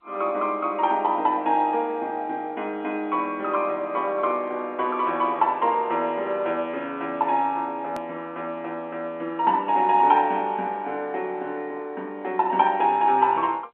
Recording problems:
phone line; 300 Hz to 3.4 kHz, G.711
click at an edit; at 8 s

